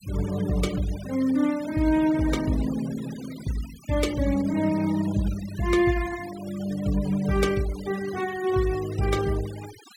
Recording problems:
denoising artefacts; signal-to-artefact ratio 17 dB

